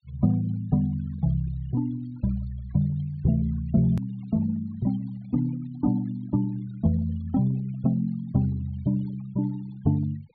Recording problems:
low-pass filter; nothing above 4.5 kHz
denoising artefacts; signal-to-artefact ratio 24 dB
click at an edit; at 4 s

